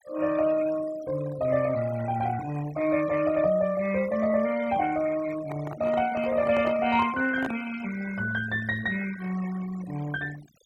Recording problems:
noise reduction artefacts; signal-to-artefact ratio 17 dB
handling noise; from 5.5 to 7.5 s; peak -3 dB vs average level

